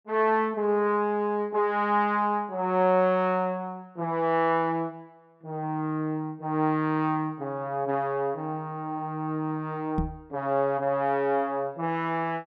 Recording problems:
microphone thump; at 10 s; peak +3 dB vs average level

